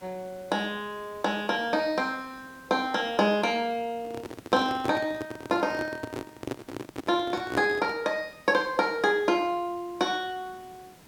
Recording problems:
hiss; slope -4 dB per octave, SNR 26 dB
handling noise; from 4 to 8 s; peak 0 dB vs average level

